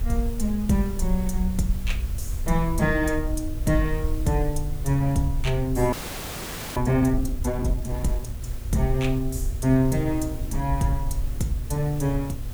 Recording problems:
electrical hum; 60 Hz, harmonics up to 840 Hz, SNR 16 dB
background hiss; SNR 18 dB
rumble; below 66 Hz, SNR 6 dB
audio freezing; at 6 s for 1 s

